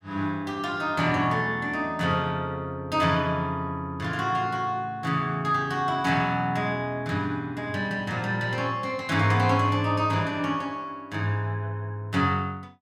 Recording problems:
none

